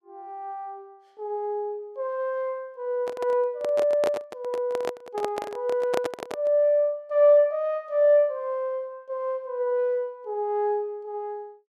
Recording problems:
microphone handling noise; from 3 to 6.5 s; peak +1 dB vs average level

